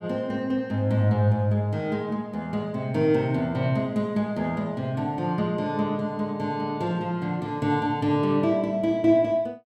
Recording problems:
none

